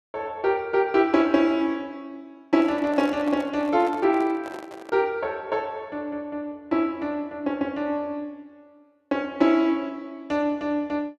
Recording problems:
handling noise; from 2.5 to 5 s; peak -8 dB vs average level

